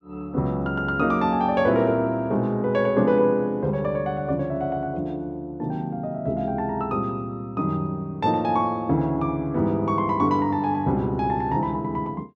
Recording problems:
none

